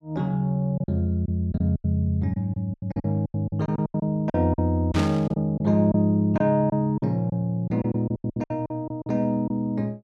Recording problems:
lost packets; 13% of the sound replaced, filled with silence
burst of static; at 5 s; peak -4 dB vs average level

